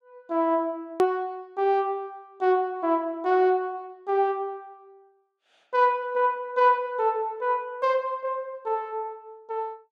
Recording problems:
hard cut with a click; at 1 s

